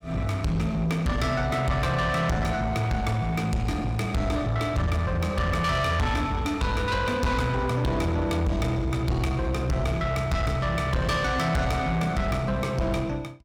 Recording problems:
distorted audio; soft clipping, signal-to-distortion ratio 7 dB

